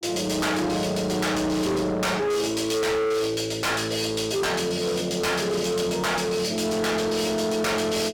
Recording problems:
distortion; hard clipping, signal-to-distortion ratio 7 dB

